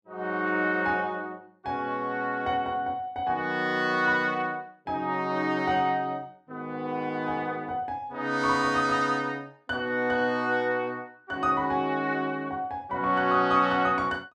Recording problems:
none

